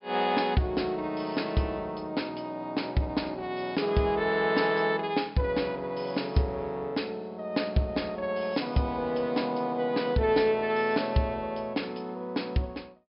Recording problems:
treble missing; nothing above 5.5 kHz

